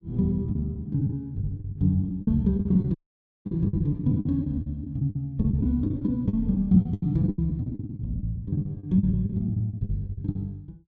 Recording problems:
lost packets; 19% of the sound replaced, filled with the last packet
audio cutting out; at 3 s for 0.5 s

